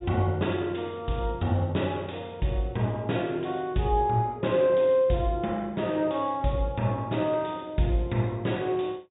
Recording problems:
low-pass filter; nothing above 4 kHz

